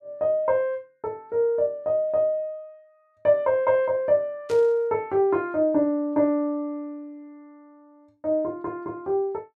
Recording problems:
burst of static; at 4.5 s; peak -12 dB vs average level

